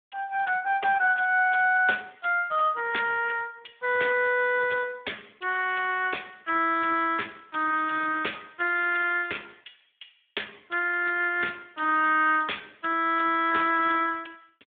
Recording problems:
telephone audio; 260 Hz to 2.9 kHz, Speex

